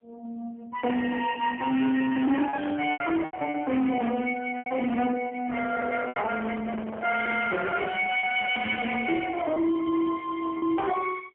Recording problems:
telephone audio; 220 Hz to 2.8 kHz, AMR-NB, then MP3
distorted audio; hard clipping, signal-to-distortion ratio 11 dB
lost packets; 5% of the sound replaced, filled with repeated pitch periods
microphone handling noise; from 5.5 to 8 s; peak -6 dB vs average level

